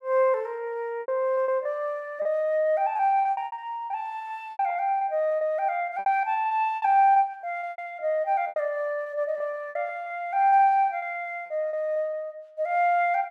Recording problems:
lost packets; 12% of the sound replaced, filled with repeated pitch periods

